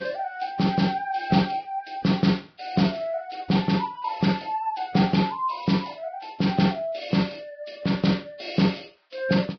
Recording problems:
codec artefacts; Vorbis, log-spectral distance 4 dB, nothing above 5.3 kHz

